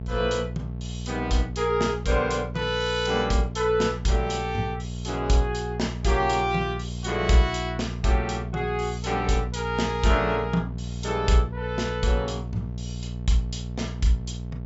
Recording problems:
treble missing; nothing above 8 kHz
hum; 60 Hz, harmonics up to 660 Hz, SNR 8 dB

